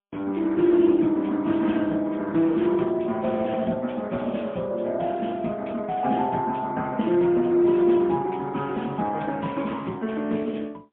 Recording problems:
telephone audio; 130 Hz to 3.3 kHz, AMR-NB, then MP3

